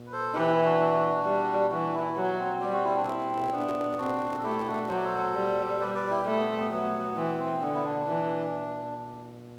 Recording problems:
mains hum; 60 Hz, harmonics up to 1.3 kHz, SNR 18 dB
hiss; slope -5 dB per octave, SNR 27 dB
microphone handling noise; from 3 to 5 s; peak -8 dB vs average level

